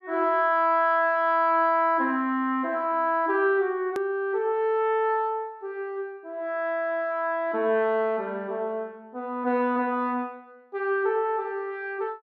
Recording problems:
click at an edit; at 4 s

